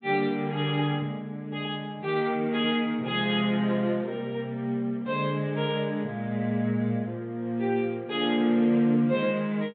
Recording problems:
low-pass filter; nothing above 4 kHz

